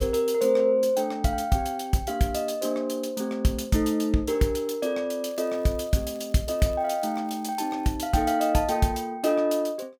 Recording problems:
crackling; from 5 to 8 s; loose cable, SNR 30 dB

